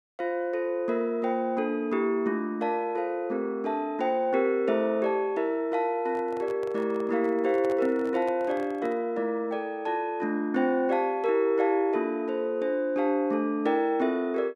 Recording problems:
microphone handling noise; from 6 to 9 s; peak -10 dB vs average level

